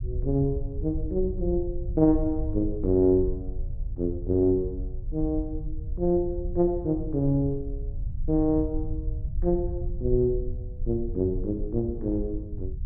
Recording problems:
low-frequency rumble; below 72 Hz, SNR 8 dB

